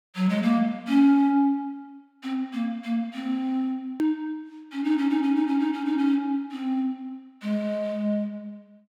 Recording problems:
edit click; at 4 s

